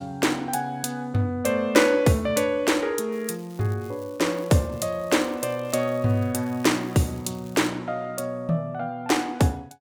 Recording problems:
crackle; from 3 to 7.5 s; loose cable, SNR 26 dB

